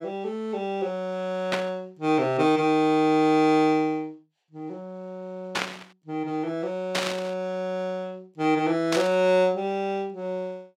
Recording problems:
burst of static; 4 times, first at 1.5 s; peak +2 dB vs average level

